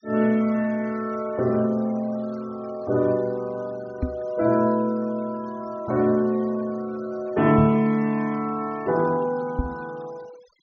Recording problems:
treble missing; nothing above 6.5 kHz
noise reduction artefacts; signal-to-artefact ratio 24 dB
microphone thump; at 4 s, at 7.5 s and at 9.5 s; peak +2 dB vs average level

